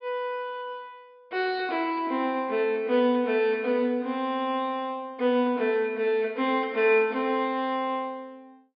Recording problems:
low-pass filter; nothing above 5.5 kHz

